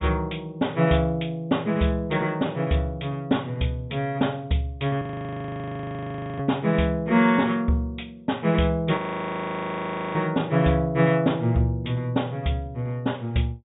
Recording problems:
treble missing; nothing above 4 kHz
audio freezing; at 5 s for 1.5 s and at 9 s for 1 s

